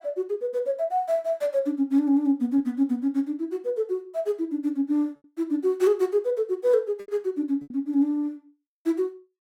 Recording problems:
packet loss; 2% of the sound replaced, filled with repeated pitch periods

